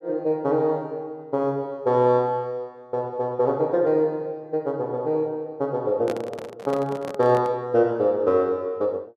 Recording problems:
handling noise; from 6 to 7.5 s; peak -3 dB vs average level

